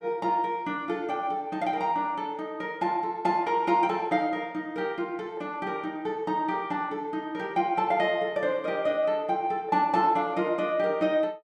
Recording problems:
none

